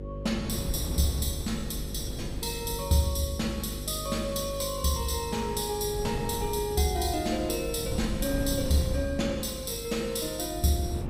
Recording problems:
hum; 50 Hz, harmonics up to 550 Hz, SNR 10 dB
wind on the microphone; below 210 Hz, SNR 9 dB

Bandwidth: 15.5 kHz